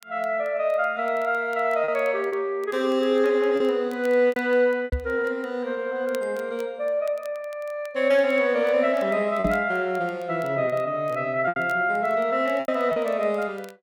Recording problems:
crackle; vinyl, SNR 29 dB
packet loss; 4% of the sound replaced, filled with repeated pitch periods
microphone thump; at 5 s and at 9.5 s; peak +1 dB vs average level

